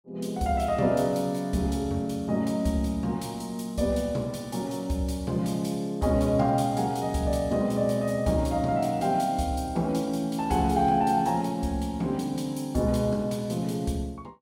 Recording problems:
none

